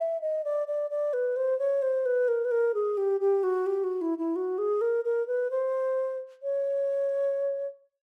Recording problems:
none

